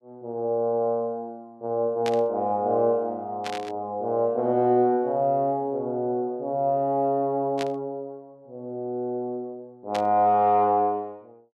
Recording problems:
static burst; 4 times, first at 2 s; peak -4 dB vs average level

